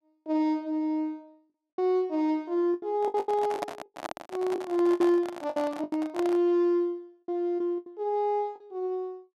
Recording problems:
lost packets; 9% of the sound replaced, filled with the last packet
handling noise; from 3 to 6.5 s; peak 0 dB vs average level

